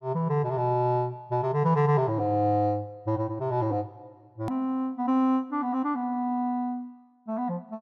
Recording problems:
hard cut with a click; at 4.5 s

